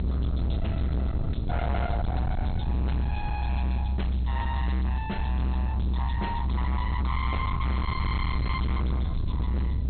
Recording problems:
low-pass filter; nothing above 4.2 kHz
distortion; hard clipping, uneven, signal-to-distortion ratio 6 dB
background hiss; SNR 27 dB
low-frequency rumble; below 120 Hz, strongest tone 64 Hz, SNR -6 dB

